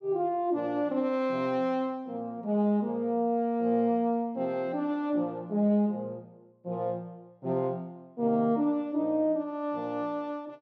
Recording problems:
none

